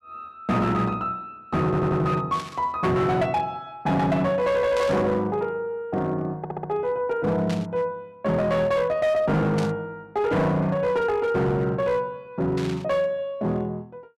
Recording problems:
distortion; hard clipping, signal-to-distortion ratio 11 dB
stutter; at 1.5 s and at 6.5 s
static burst; 5 times, first at 2.5 s; peak -7 dB vs average level

